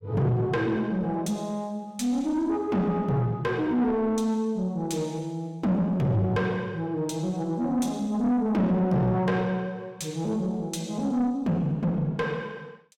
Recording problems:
distortion; soft clipping, signal-to-distortion ratio 10 dB

